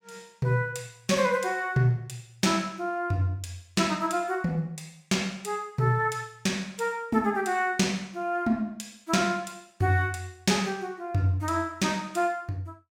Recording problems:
none

